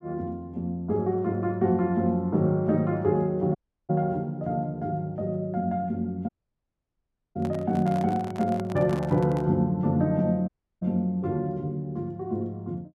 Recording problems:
audio cutting out; at 3.5 s, at 6.5 s for 1 s and at 10 s
handling noise; from 7.5 to 9.5 s; peak -7 dB vs average level

